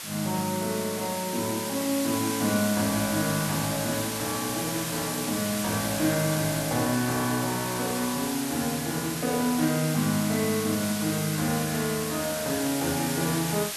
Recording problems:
hiss; slope +1 dB per octave, SNR 4 dB

